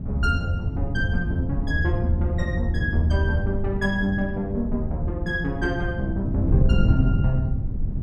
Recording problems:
wind on the microphone; below 130 Hz, SNR 1 dB

